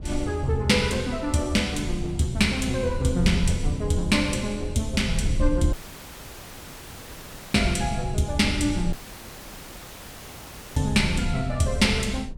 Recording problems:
low-frequency rumble; below 82 Hz, SNR 9 dB
dropout; at 5.5 s for 2 s and at 9 s for 2 s

